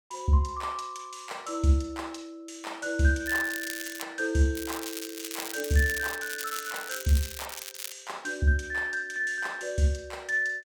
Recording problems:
crackle; at 3.5 s, from 4.5 to 7.5 s and at 7.5 s; loose cable, SNR 8 dB

